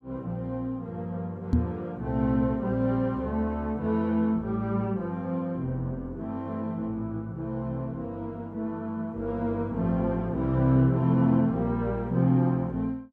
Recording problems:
knock on the microphone; at 1.5 s; peak +8 dB vs average level

